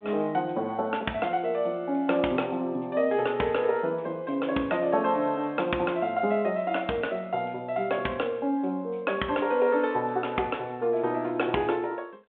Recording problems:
telephone audio; 260 Hz to 3.6 kHz, G.726

